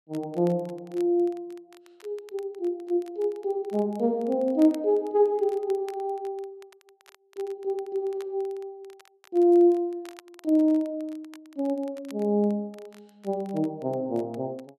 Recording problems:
crackling; vinyl, SNR 29 dB

